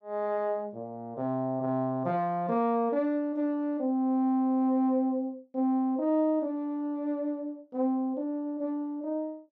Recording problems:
none

